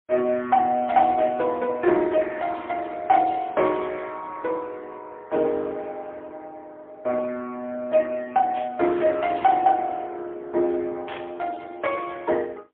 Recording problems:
telephone audio; 220 Hz to 2.8 kHz, AMR-NB, then MP3
static burst; at 8.5 s and at 11 s; peak -7 dB vs average level

